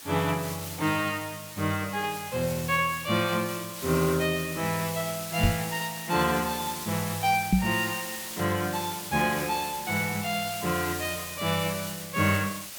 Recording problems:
hiss; slope +1 dB per octave, SNR 8 dB
microphone thump; at 5.5 s and at 7.5 s; peak +9 dB vs average level

